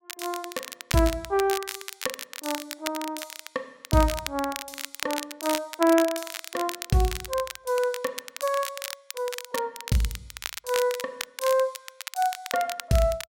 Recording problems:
crackling; vinyl, SNR 8 dB

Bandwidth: 16 kHz